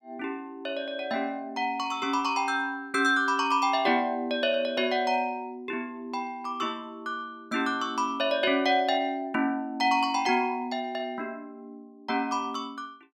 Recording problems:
none

